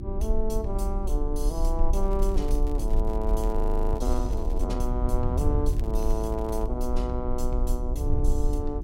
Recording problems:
mains hum; 60 Hz, harmonics up to 360 Hz, SNR 9 dB
low-frequency rumble; below 44 Hz, strongest tone 26 Hz, SNR -1 dB
wind on the microphone; below 92 Hz, SNR 3 dB
crackle; from 2 to 4.5 s and at 5.5 s; loose cable, SNR 23 dB
audio freezing; at 3.5 s

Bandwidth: 16 kHz